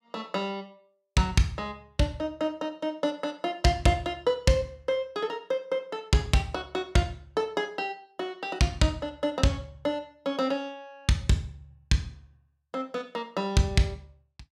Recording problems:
none

